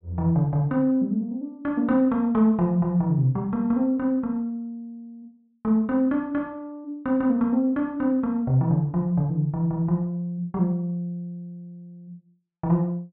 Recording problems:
treble cut off; nothing above 4 kHz

